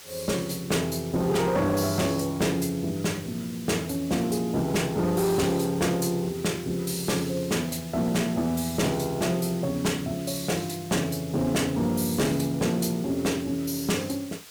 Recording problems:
distorted audio; hard clipping, signal-to-distortion ratio 12 dB
hiss; slope 0 dB per octave, SNR 17 dB

